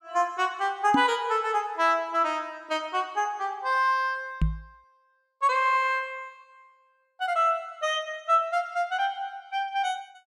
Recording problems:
microphone bump; at 1 s and at 4.5 s; peak +5 dB vs average level

